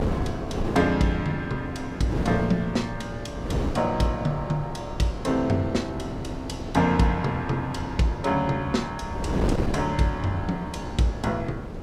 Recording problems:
wind noise; below 400 Hz, SNR 6 dB

